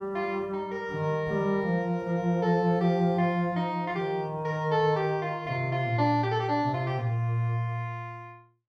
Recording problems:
none

